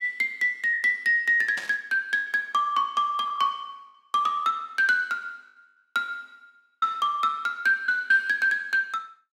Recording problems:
lost packets; 4% of the sound replaced, filled with the last packet
burst of static; at 1.5 s; peak -8 dB vs average level

